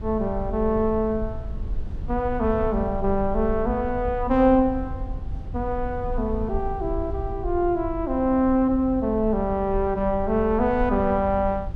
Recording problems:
rumble; below 74 Hz, SNR 10 dB

